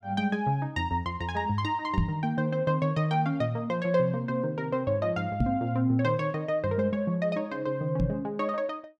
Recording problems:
knock on the microphone; at 2 s, at 5.5 s and at 8 s; peak +6 dB vs average level

